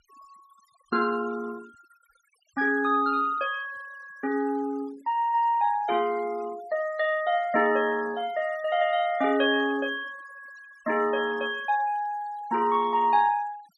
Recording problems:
denoising artefacts; signal-to-artefact ratio 23 dB

